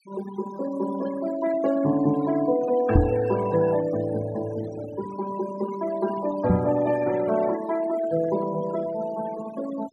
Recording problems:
noise reduction artefacts; signal-to-artefact ratio 15 dB
microphone thump; at 3 s and at 6.5 s; peak +10 dB vs average level

